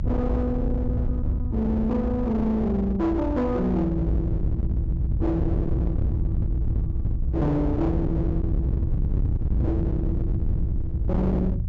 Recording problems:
treble cut off; nothing above 8 kHz
distorted audio; hard clipping, uneven, signal-to-distortion ratio 6 dB
low-frequency rumble; below 120 Hz, SNR 0 dB

